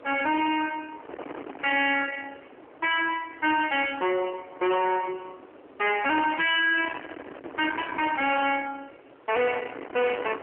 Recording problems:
phone line; 240 Hz to 3.2 kHz, AMR-NB
distortion; soft clipping, signal-to-distortion ratio 6 dB
wind on the microphone; below 2 kHz, SNR 14 dB

